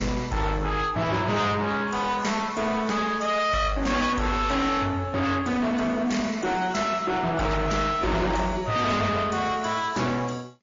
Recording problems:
lossy codec; AAC, then MP3, log-spectral distance 4 dB, nothing above 6.9 kHz
distorted audio; soft clipping, signal-to-distortion ratio 6 dB

